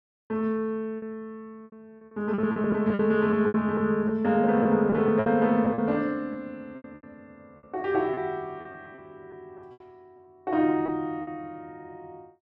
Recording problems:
lost packets; 10% of the sound replaced, filled with repeated pitch periods

